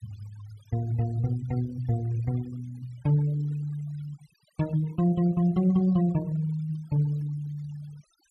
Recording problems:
denoising artefacts; signal-to-artefact ratio 23 dB

